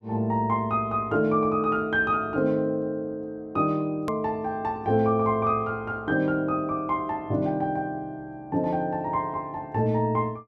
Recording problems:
hard cut with a click; at 4 s

